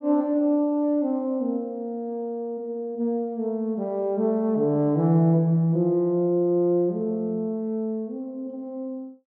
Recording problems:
none

